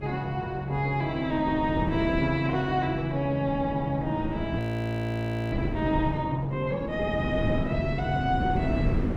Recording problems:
wind noise; below 280 Hz, SNR 5 dB
frozen audio; at 4.5 s for 1 s

